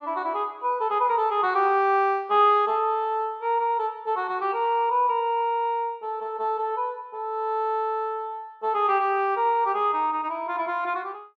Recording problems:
none

